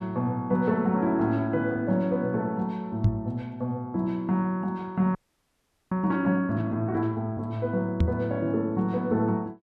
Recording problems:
microphone bump; at 3 s and at 8 s; peak +7 dB vs average level
audio freezing; at 5 s for 1 s

